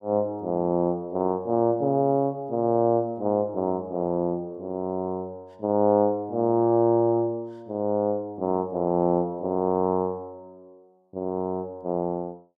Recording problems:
none

